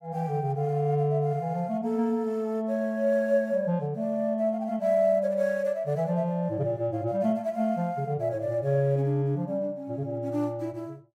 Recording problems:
none

